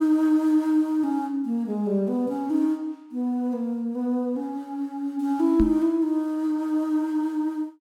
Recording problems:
microphone thump; at 5.5 s; peak +3 dB vs average level

